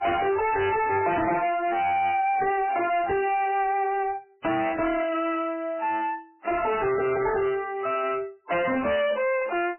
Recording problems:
lossy compression; MP3, log-spectral distance 4 dB, nothing above 2.4 kHz
distorted audio; soft clipping, signal-to-distortion ratio 6 dB

